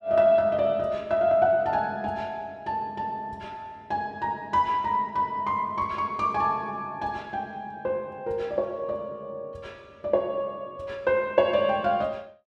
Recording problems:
none

